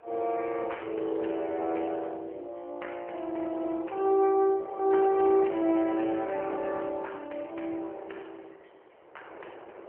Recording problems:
telephone audio; 280 Hz to 3.1 kHz, AMR-NB
wind on the microphone; below 900 Hz, SNR 21 dB

